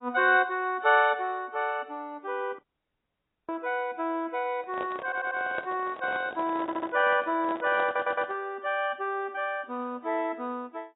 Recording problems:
codec artefacts; AAC, log-spectral distance 2 dB, nothing above 3.2 kHz
audio cutting out; at 2.5 s for 1 s
handling noise; from 4.5 to 8.5 s; peak -2 dB vs average level
stutter; at 5 s, at 6.5 s and at 8 s

